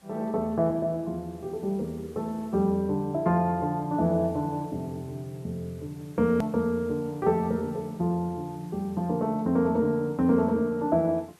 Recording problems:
hiss; slope -3 dB per octave, SNR 29 dB
edit click; at 6.5 s

